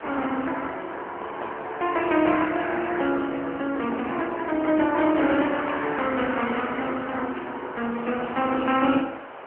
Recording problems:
telephone audio; 190 Hz to 3.1 kHz, AMR-NB
background hiss; SNR 16 dB

